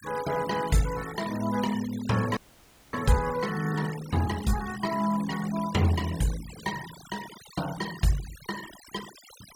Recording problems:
noise reduction artefacts; signal-to-artefact ratio 13 dB
frozen audio; at 2.5 s for 0.5 s

